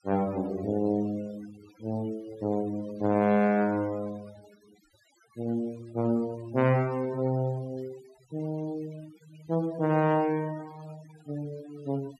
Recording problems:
noise reduction artefacts; signal-to-artefact ratio 22 dB

